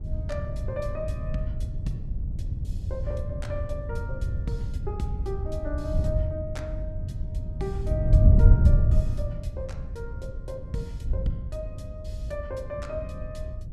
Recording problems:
wind noise; below 100 Hz, SNR -8 dB

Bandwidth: 14.5 kHz